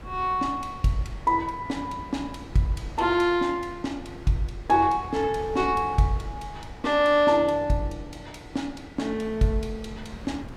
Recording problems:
wind on the microphone; below 350 Hz, SNR 18 dB

